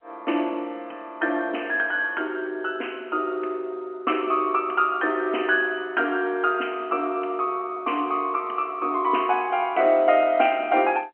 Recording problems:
phone line; 260 Hz to 3.1 kHz, G.711

